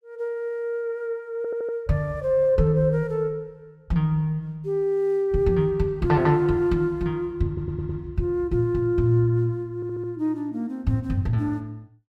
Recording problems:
stutter; at 1.5 s, at 7.5 s and at 10 s

